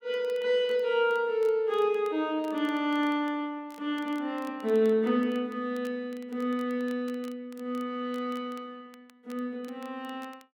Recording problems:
crackling; vinyl, SNR 28 dB

